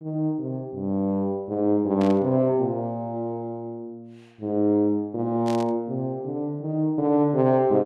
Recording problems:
burst of static; at 2 s and at 5.5 s; peak -11 dB vs average level

